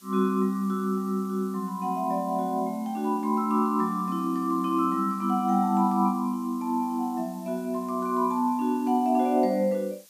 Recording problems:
background hiss; slope +2 dB per octave, SNR 25 dB

